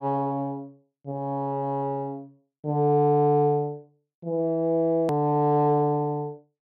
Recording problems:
click at an edit; at 5 s

